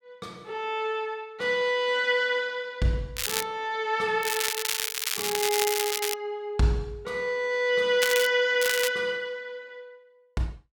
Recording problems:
crackling; 4 times, first at 3 s; loose cable, SNR 2 dB

